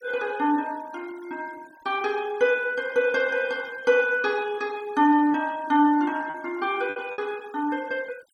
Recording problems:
noise reduction artefacts; signal-to-artefact ratio 25 dB
lost packets; 2% of the sound replaced, filled with repeated pitch periods

